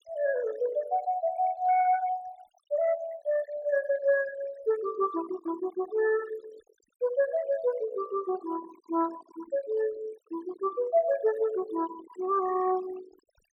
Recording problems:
denoising artefacts; signal-to-artefact ratio 17 dB

